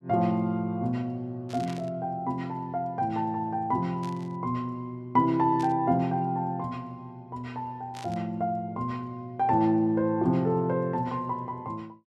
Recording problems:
static burst; 4 times, first at 1.5 s; peak -12 dB vs average level

